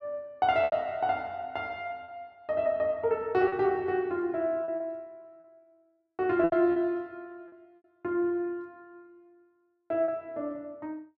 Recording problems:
packet loss; 5% of the sound replaced, filled with repeated pitch periods

